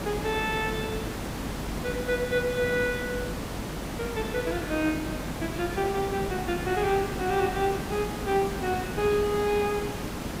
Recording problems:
hum; 50 Hz, harmonics up to 450 Hz, SNR 15 dB
background hiss; slope -5 dB per octave, SNR 5 dB

